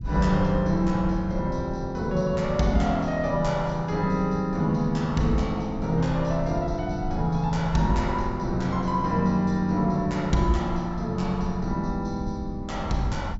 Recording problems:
treble cut off; nothing above 8 kHz
rumble; below 110 Hz, SNR 11 dB

